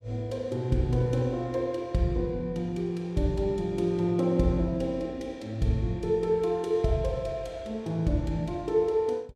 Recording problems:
none

